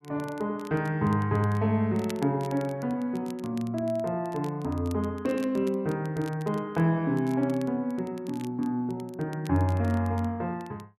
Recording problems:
crackling; vinyl, SNR 24 dB

